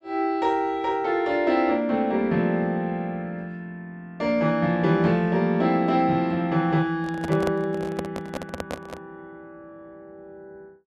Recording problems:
microphone handling noise; from 7 to 9 s; peak -2 dB vs average level

